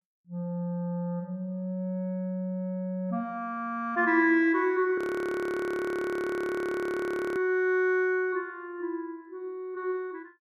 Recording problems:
frozen audio; at 5 s for 2.5 s

